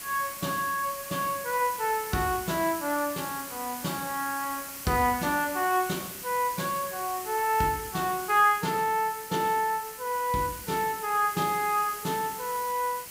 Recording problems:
hiss; slope 0 dB per octave, SNR 9 dB

